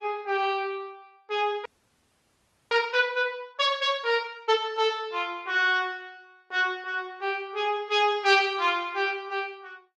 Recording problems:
lossy codec; Opus, log-spectral distance 2 dB
frozen audio; at 1.5 s for 1 s

